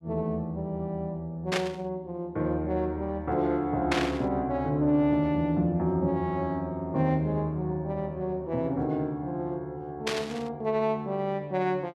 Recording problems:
static burst; at 1.5 s, at 4 s and at 10 s; peak +4 dB vs average level

